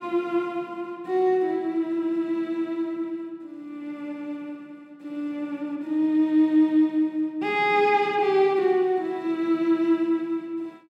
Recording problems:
none

